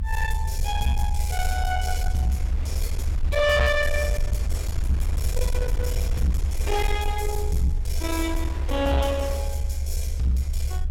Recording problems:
distortion; soft clipping, signal-to-distortion ratio 11 dB
low-frequency rumble; below 72 Hz, SNR 1 dB
wind on the microphone; below 1.5 kHz, SNR 15 dB

